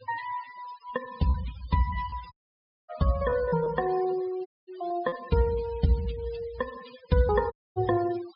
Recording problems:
treble missing; nothing above 5.5 kHz
noise reduction artefacts; signal-to-artefact ratio 18 dB
packet loss; 4% of the sound replaced, filled with repeated pitch periods
audio cutting out; at 2.5 s for 0.5 s, at 4.5 s and at 7.5 s

